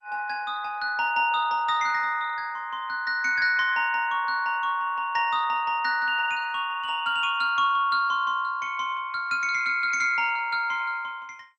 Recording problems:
lossy codec; MP2, log-spectral distance 3 dB

